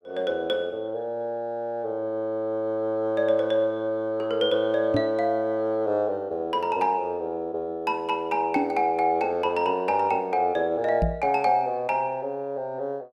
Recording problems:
microphone thump; at 5 s, at 8.5 s and at 11 s; peak +3 dB vs average level

